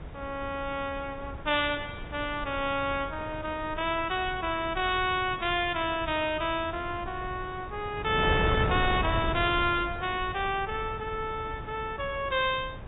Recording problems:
treble missing; nothing above 4 kHz
wind noise; below 510 Hz, SNR 8 dB

